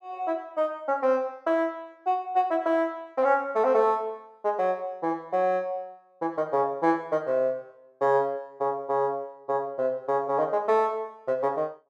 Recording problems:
none

